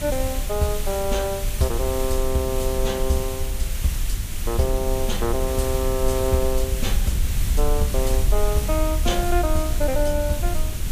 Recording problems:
background hiss; slope +1 dB per octave, SNR 7 dB
low-frequency rumble; below 62 Hz, SNR 2 dB
wind noise; below 250 Hz, SNR 16 dB

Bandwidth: 15 kHz